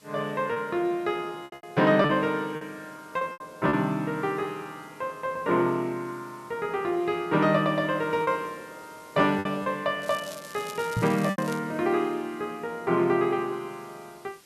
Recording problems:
hiss; slope -1 dB per octave, SNR 27 dB
packet loss; 5% of the sound replaced, filled with repeated pitch periods
crackling; from 10 to 12 s; loose cable, SNR 17 dB
microphone bump; at 11 s; peak +2 dB vs average level

